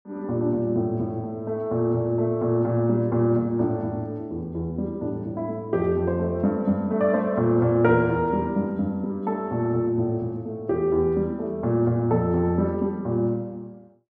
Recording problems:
none

